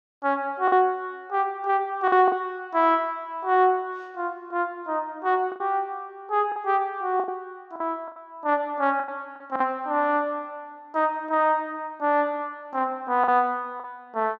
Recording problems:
lost packets; 5% of the sound replaced, filled with the last packet

